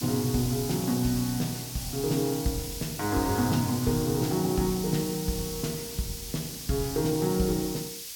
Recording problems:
background hiss; SNR 7 dB

